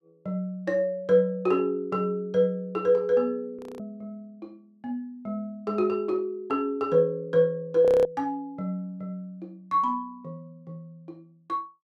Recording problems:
audio freezing; at 3.5 s and at 8 s

